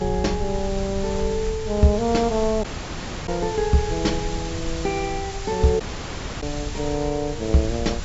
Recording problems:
treble cut off; nothing above 8 kHz
hiss; slope -1 dB per octave, SNR 12 dB
rumble; below 88 Hz, SNR 10 dB
dropout; at 2.5 s for 0.5 s and at 6 s for 0.5 s

